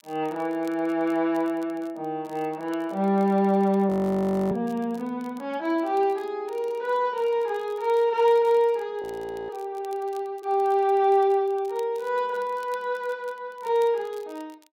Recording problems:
crackling; vinyl, SNR 30 dB
audio freezing; at 4 s for 0.5 s and at 9 s

